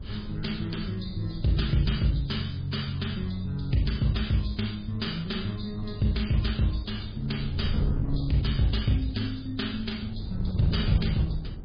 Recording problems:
lossy codec; MP3, log-spectral distance 5 dB
wind noise; below 120 Hz, SNR 9 dB

